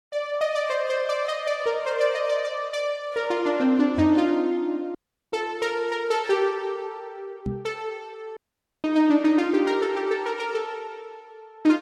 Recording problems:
codec artefacts; Vorbis, log-spectral distance 2 dB, nothing above 12.3 kHz
knock on the microphone; at 4 s and at 7.5 s; peak -2 dB vs average level
dropout; at 5 s and at 8.5 s

